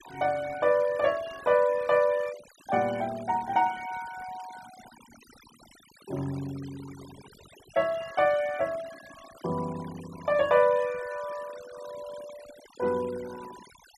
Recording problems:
denoising artefacts; signal-to-artefact ratio 20 dB

